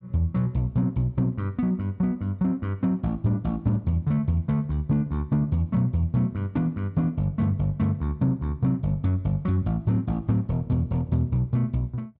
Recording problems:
none

